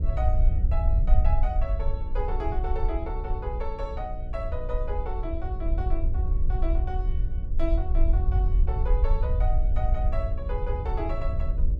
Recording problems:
hum; 60 Hz, harmonics up to 600 Hz, SNR 10 dB
rumble; below 62 Hz, SNR -8 dB

